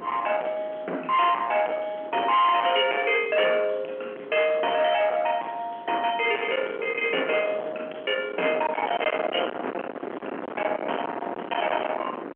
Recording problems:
telephone audio; 280 Hz to 3.1 kHz, G.711
distorted audio; soft clipping, signal-to-distortion ratio 6 dB
wind noise; below 1.5 kHz, SNR 10 dB

